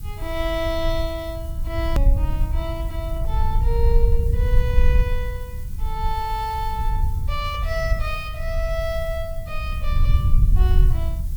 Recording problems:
background hiss; SNR 18 dB
rumble; below 68 Hz, SNR -5 dB
hard cut with a click; at 2 s

